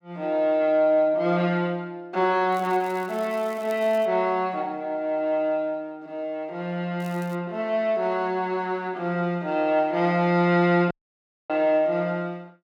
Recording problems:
crackling; from 2.5 to 4 s and at 7 s; loose cable, SNR 26 dB
audio cutting out; at 11 s for 0.5 s

